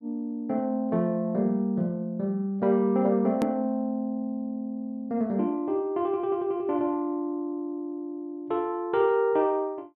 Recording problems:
edit click; at 3.5 s

